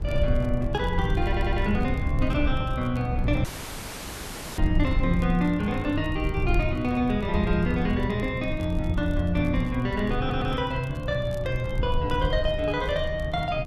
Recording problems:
low-frequency rumble; below 96 Hz, SNR 4 dB
crackling; vinyl, SNR 29 dB
audio stuttering; at 1 s and at 10 s
audio cutting out; at 3.5 s for 1 s

